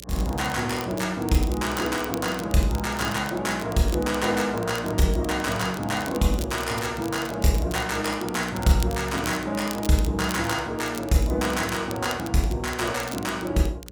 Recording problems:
electrical hum; 60 Hz, harmonics up to 600 Hz, SNR 22 dB
crackle; vinyl, SNR 15 dB

